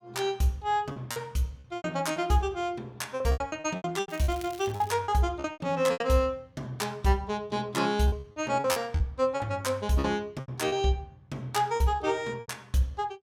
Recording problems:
packet loss; 11% of the sound replaced, filled with repeated pitch periods
crackle; at 4 s; loose cable, SNR 19 dB

